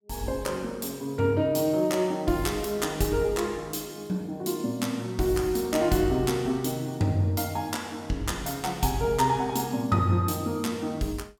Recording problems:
none

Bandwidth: 17.5 kHz